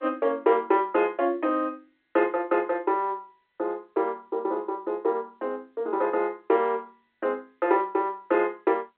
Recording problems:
telephone audio; 280 Hz to 3.5 kHz, G.711

